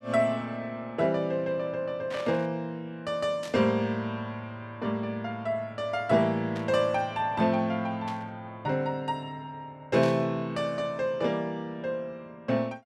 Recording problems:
static burst; 5 times, first at 2 s; peak -7 dB vs average level

